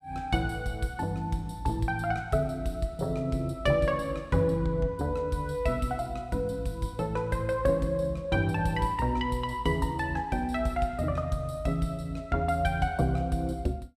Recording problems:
none

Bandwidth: 14.5 kHz